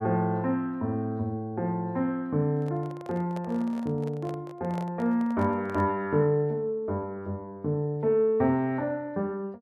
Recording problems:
handling noise; from 2.5 to 6 s; peak -9 dB vs average level

